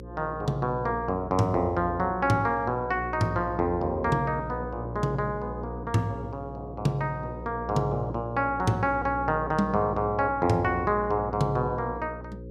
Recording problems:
hum; 60 Hz, harmonics up to 540 Hz, SNR 11 dB

